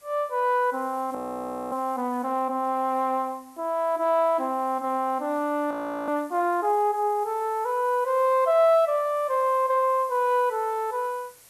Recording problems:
hiss; slope 0 dB per octave, SNR 27 dB
frozen audio; at 1 s for 0.5 s and at 5.5 s

